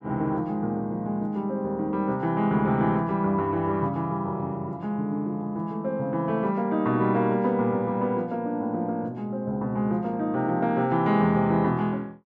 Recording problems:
none

